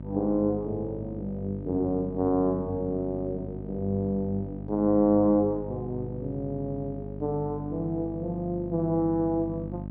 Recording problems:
hum; 50 Hz, harmonics up to 900 Hz, SNR 10 dB

